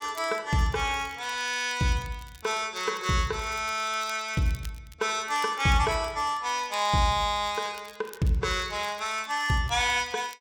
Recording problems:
crackling; vinyl, SNR 23 dB

